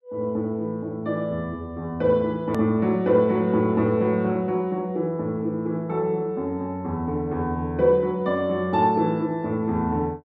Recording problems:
edit click; at 2.5 s

